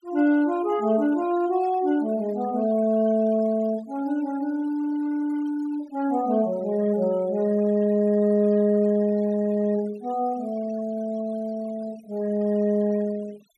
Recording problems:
denoising artefacts; signal-to-artefact ratio 23 dB

